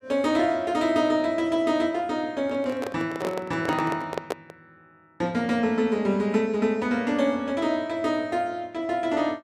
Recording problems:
handling noise; from 2.5 to 4.5 s; peak +1 dB vs average level

